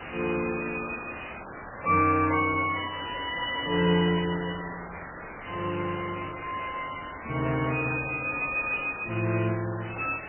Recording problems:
lossy compression; MP3, log-spectral distance 20 dB, nothing above 2.6 kHz
background hiss; SNR 12 dB
static burst; at 2 s; peak -17 dB vs average level

